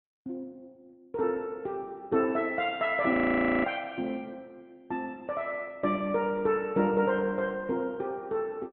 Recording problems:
treble missing; nothing above 4 kHz
lossy codec; Opus, then Opus, log-spectral distance 2 dB
frozen audio; at 3 s for 0.5 s

